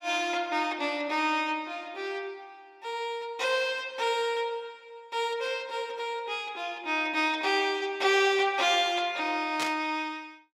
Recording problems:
burst of static; at 9.5 s; peak 0 dB vs average level

